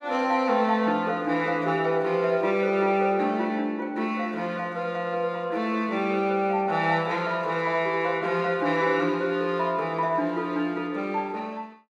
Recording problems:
none

